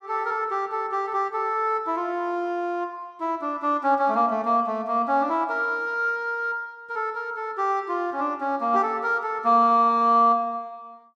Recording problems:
none

